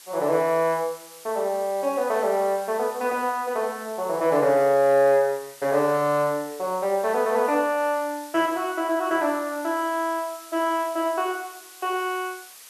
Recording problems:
background hiss; slope +2 dB per octave, SNR 19 dB

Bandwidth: 13 kHz